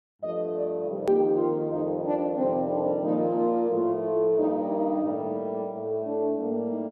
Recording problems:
click at an edit; at 1 s

